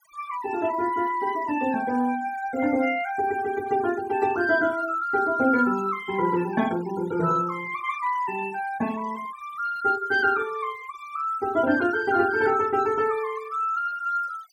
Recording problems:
noise reduction artefacts; signal-to-artefact ratio 19 dB

